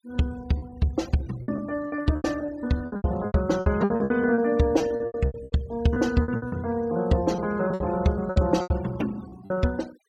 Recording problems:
noise reduction artefacts; signal-to-artefact ratio 22 dB
lost packets; 17% of the sound replaced, filled with repeated pitch periods

